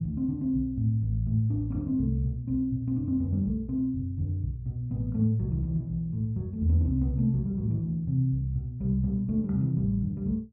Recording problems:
none

